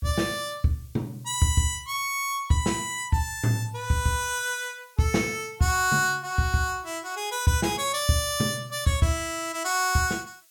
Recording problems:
hiss; slope +5 dB per octave, SNR 29 dB

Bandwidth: 17.5 kHz